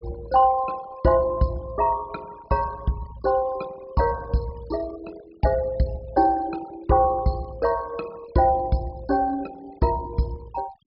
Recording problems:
treble missing; nothing above 5.5 kHz
noise reduction artefacts; signal-to-artefact ratio 23 dB

